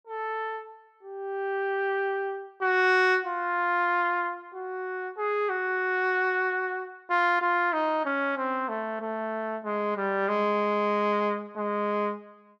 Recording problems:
none

